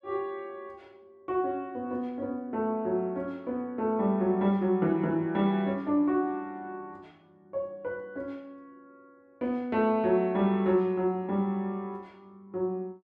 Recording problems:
none

